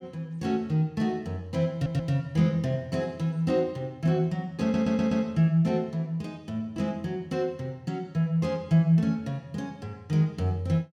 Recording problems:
audio stuttering; at 1.5 s and at 4.5 s

